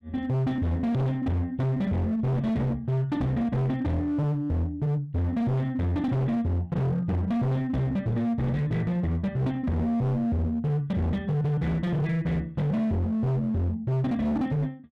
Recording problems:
distortion; hard clipping, uneven, signal-to-distortion ratio 7 dB

